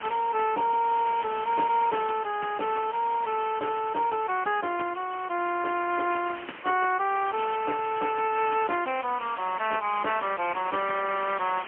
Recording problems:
telephone audio; 260 Hz to 3.1 kHz, AMR-NB, then MP3
hiss; SNR 13 dB

